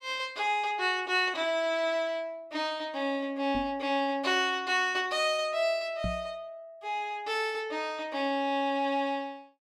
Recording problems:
knock on the microphone; at 3.5 s and at 6 s; peak -2 dB vs average level

